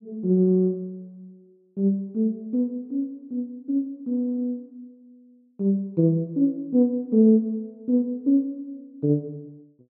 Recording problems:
none

